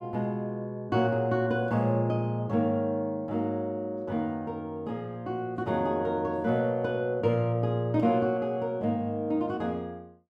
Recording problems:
none

